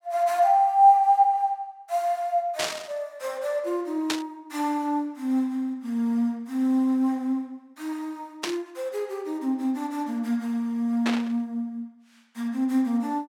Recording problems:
static burst; 4 times, first at 2.5 s; peak +2 dB vs average level

